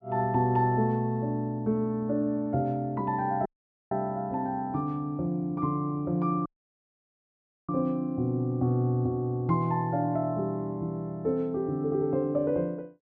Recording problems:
dropout; at 3.5 s and at 6.5 s for 1 s

